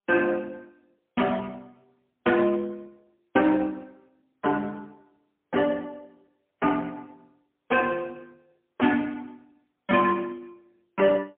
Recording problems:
telephone audio; 220 Hz to 3.2 kHz, AMR-NB, then MP3

